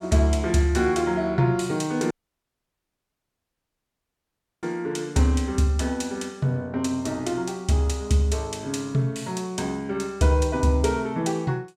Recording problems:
audio cutting out; at 2 s for 2.5 s

